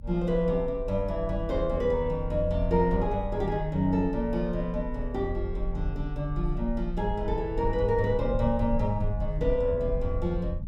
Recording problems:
low-frequency rumble; below 50 Hz, strongest tone 28 Hz, SNR 7 dB

